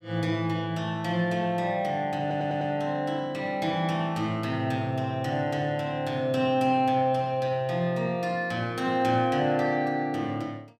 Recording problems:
audio stuttering; at 2 s

